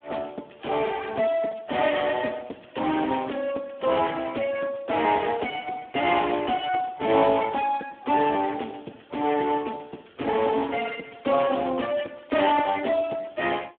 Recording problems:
phone line; 220 Hz to 3.5 kHz, Speex

